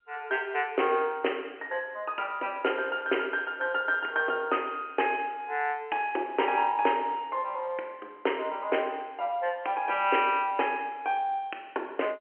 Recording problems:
phone line; 300 Hz to 3.1 kHz, G.711

